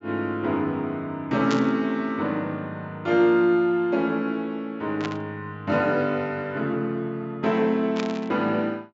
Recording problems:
low-pass filter; nothing above 7.6 kHz
static burst; at 1.5 s, at 5 s and at 8 s; peak -3 dB vs average level

